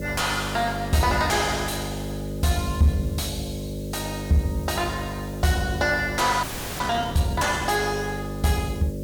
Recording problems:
distortion; soft clipping, signal-to-distortion ratio 10 dB
hum; 50 Hz, harmonics up to 600 Hz, SNR 8 dB
hiss; SNR 23 dB
frozen audio; at 6.5 s

